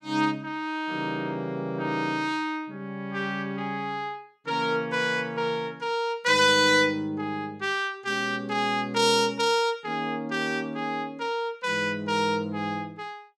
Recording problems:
none

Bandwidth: 16.5 kHz